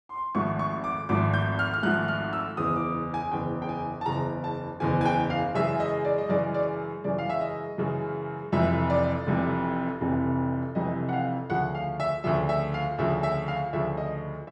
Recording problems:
none

